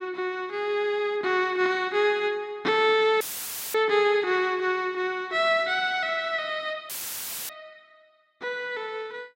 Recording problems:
audio cutting out; at 3 s for 0.5 s and at 7 s for 0.5 s; filled with static

